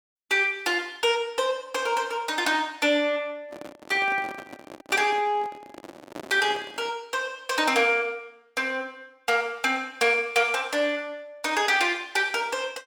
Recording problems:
handling noise; from 3.5 to 7 s; peak -9 dB vs average level

